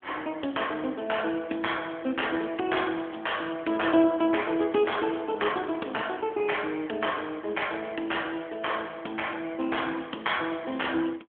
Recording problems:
telephone audio; 220 Hz to 3.4 kHz, AMR-NB

